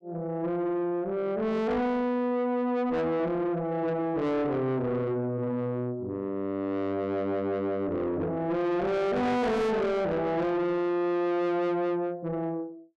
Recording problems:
distortion; soft clipping, signal-to-distortion ratio 7 dB

